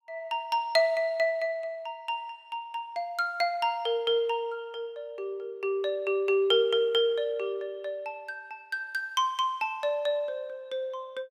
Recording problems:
none

